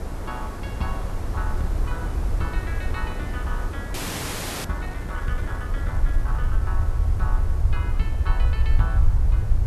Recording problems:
hiss; slope -7 dB per octave, SNR 3 dB
low-frequency rumble; below 70 Hz, SNR -9 dB
audio freezing; at 4 s for 0.5 s

